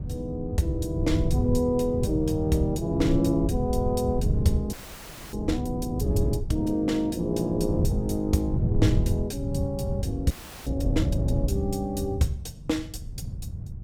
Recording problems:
wind noise; below 130 Hz, SNR 2 dB
frozen audio; at 4.5 s for 0.5 s and at 10 s

